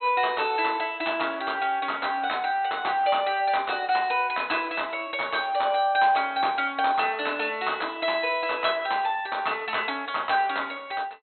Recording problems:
low-pass filter; nothing above 4.2 kHz

